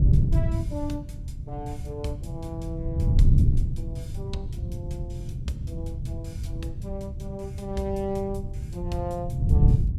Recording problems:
wind noise; below 130 Hz, SNR -7 dB

